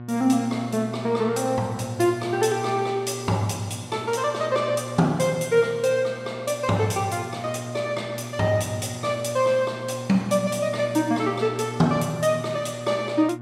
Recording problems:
hum; 60 Hz, harmonics up to 1.4 kHz, SNR 12 dB

